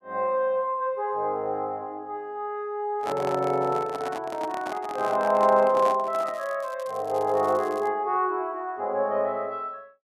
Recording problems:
microphone handling noise; from 3 to 6.5 s; peak -3 dB vs average level
crackle; from 6 to 8 s; loose cable, SNR 25 dB

